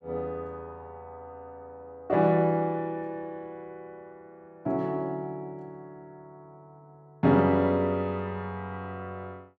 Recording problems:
none

